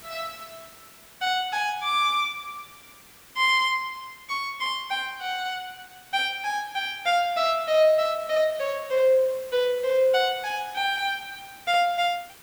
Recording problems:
hiss; slope -1 dB per octave, SNR 22 dB

